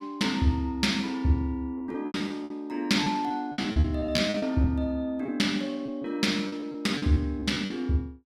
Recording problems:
lost packets; 11% of the sound replaced, filled with repeated pitch periods

